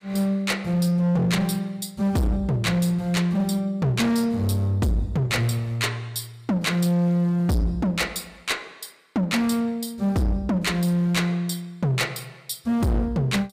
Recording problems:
distortion; hard clipping, uneven, signal-to-distortion ratio 8 dB

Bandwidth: 15.5 kHz